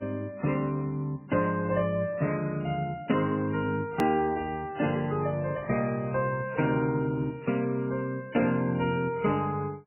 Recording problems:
codec artefacts; MP3, log-spectral distance 2 dB, nothing above 16.1 kHz
edit click; at 4 s

